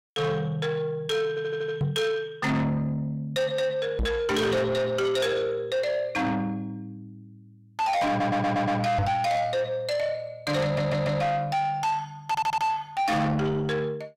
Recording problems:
distorted audio; soft clipping, signal-to-distortion ratio 8 dB
audio stuttering; 4 times, first at 1.5 s
knock on the microphone; at 2 s, at 4 s and at 9 s; peak +5 dB vs average level

